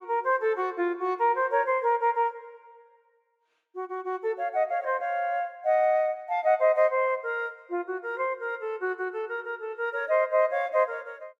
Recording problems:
none

